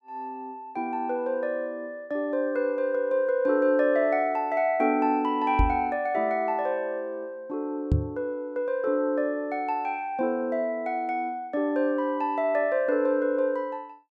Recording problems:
microphone thump; at 5.5 s and at 8 s; peak +6 dB vs average level

